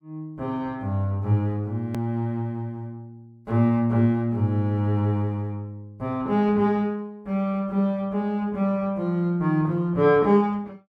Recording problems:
edit click; at 2 s

